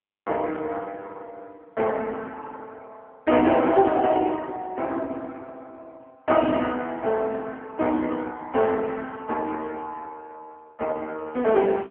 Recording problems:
phone line; 220 Hz to 3.3 kHz, AMR-NB

